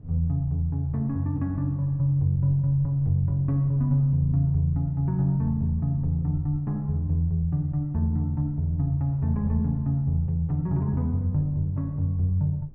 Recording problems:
rumble; below 90 Hz, SNR 20 dB

